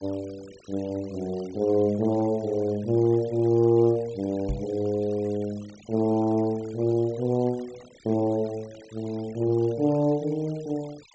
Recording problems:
treble missing; nothing above 8 kHz
noise reduction artefacts; signal-to-artefact ratio 25 dB
knock on the microphone; at 4.5 s; peak -1 dB vs average level

